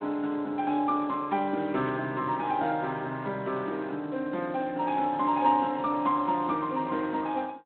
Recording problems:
telephone audio; 220 Hz to 3.8 kHz, Speex

